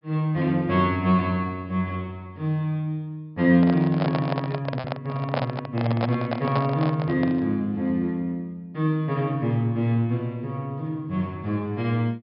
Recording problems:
low-pass filter; nothing above 5.5 kHz
lost packets; 0.3% of the sound replaced, filled with repeated pitch periods
handling noise; from 3.5 to 7.5 s; peak +2 dB vs average level

